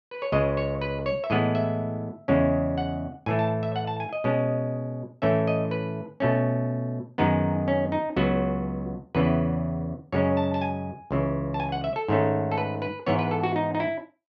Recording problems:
none

